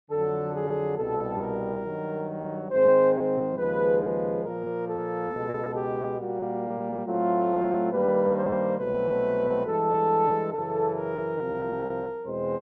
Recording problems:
lost packets; 7% of the sound replaced, filled with repeated pitch periods

